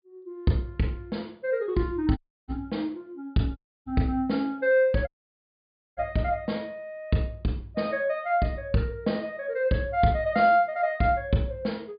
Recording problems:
treble missing; nothing above 4.9 kHz
dropout; at 2 s, at 3.5 s and at 5 s for 1 s

